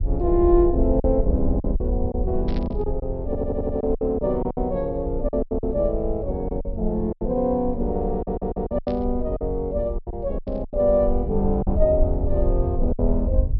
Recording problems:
treble cut off; nothing above 5.5 kHz
low-frequency rumble; below 68 Hz, SNR 5 dB
packet loss; 10% of the sound replaced, filled with silence
burst of static; at 2.5 s, at 9 s and at 10 s; peak -13 dB vs average level
audio stuttering; at 3.5 s and at 8 s

